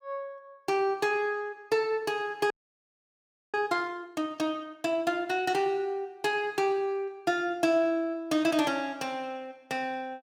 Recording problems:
frozen audio; at 2.5 s for 1 s

